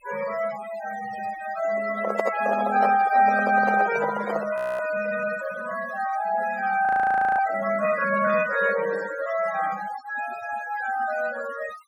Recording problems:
noise reduction artefacts; signal-to-artefact ratio 13 dB
microphone handling noise; from 2 to 4.5 s; peak +3 dB vs average level
audio freezing; at 4.5 s and at 7 s for 0.5 s

